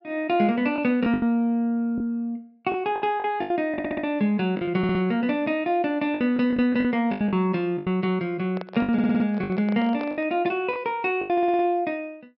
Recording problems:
treble cut off; nothing above 5.5 kHz
lost packets; 10% of the sound replaced, filled with the last packet
audio stuttering; 4 times, first at 3.5 s
microphone handling noise; from 8.5 to 10 s; peak -8 dB vs average level

